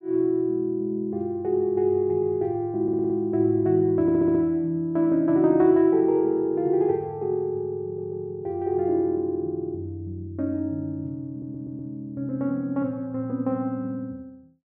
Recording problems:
audio stuttering; 4 times, first at 3 s

